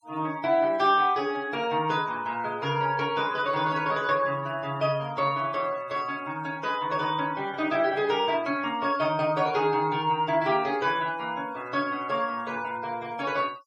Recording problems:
denoising artefacts; signal-to-artefact ratio 24 dB

